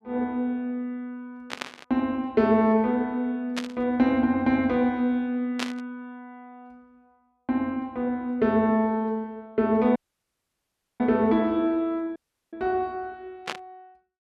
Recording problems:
burst of static; 4 times, first at 1.5 s; peak -1 dB vs average level
audio cutting out; at 10 s for 1 s and at 12 s

